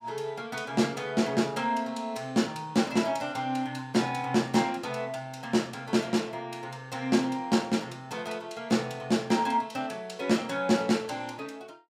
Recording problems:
none

